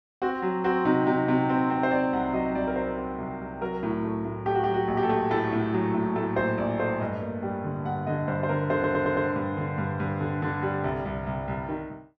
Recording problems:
audio stuttering; at 8.5 s

